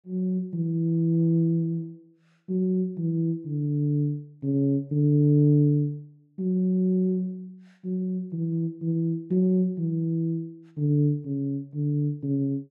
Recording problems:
none

